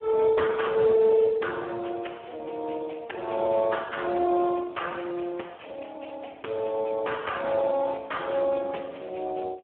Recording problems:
telephone audio; 280 Hz to 3.3 kHz, Speex

